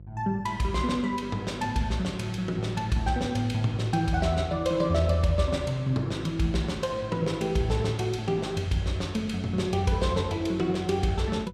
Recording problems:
electrical hum; 50 Hz, harmonics up to 550 Hz, SNR 19 dB

